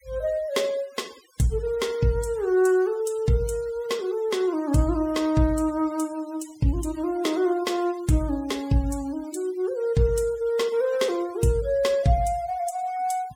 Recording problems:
noise reduction artefacts; signal-to-artefact ratio 22 dB

